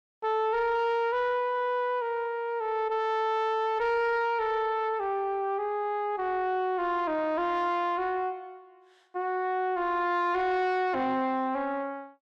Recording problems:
distortion; soft clipping, signal-to-distortion ratio 11 dB

